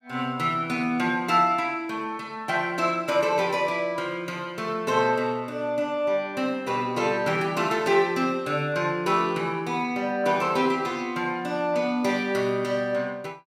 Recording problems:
none

